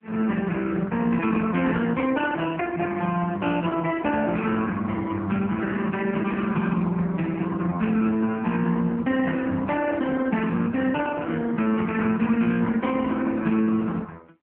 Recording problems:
phone line; 150 Hz to 3.1 kHz, AMR-NB

